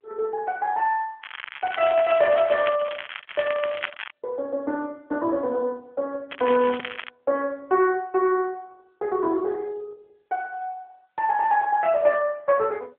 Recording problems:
telephone audio; 300 Hz to 3.3 kHz, AMR-NB
crackling; from 1 to 4 s and at 6.5 s; loose cable, SNR 12 dB

